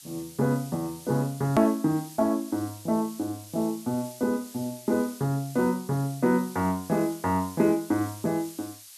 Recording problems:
hiss; slope +6 dB per octave, SNR 17 dB
edit click; at 1.5 s

